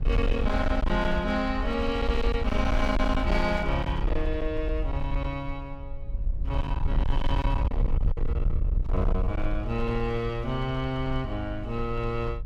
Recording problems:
distorted audio; hard clipping, signal-to-distortion ratio 8 dB
wind on the microphone; below 66 Hz, SNR 1 dB

